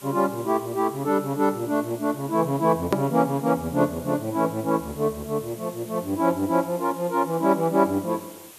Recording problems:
hiss; slope -1 dB per octave, SNR 19 dB
click at an edit; at 3 s

